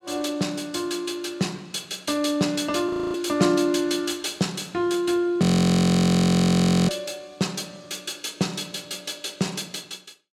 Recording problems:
frozen audio; at 3 s and at 5.5 s for 1.5 s

